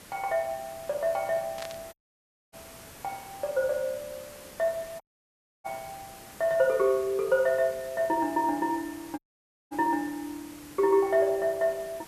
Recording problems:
hiss; slope -3 dB per octave, SNR 19 dB
static burst; at 1.5 s; peak -8 dB vs average level
audio cutting out; at 2 s for 0.5 s, at 5 s for 0.5 s and at 9 s for 0.5 s

